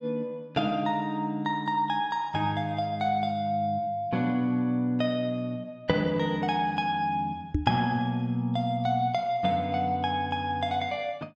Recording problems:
microphone thump; at 7.5 s; peak +5 dB vs average level

